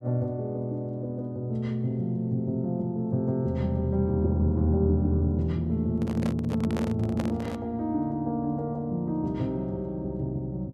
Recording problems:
microphone handling noise; from 6 to 7.5 s; peak -2 dB vs average level

